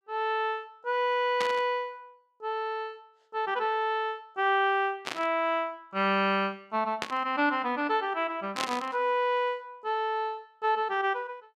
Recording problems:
static burst; 4 times, first at 1.5 s; peak +1 dB vs average level

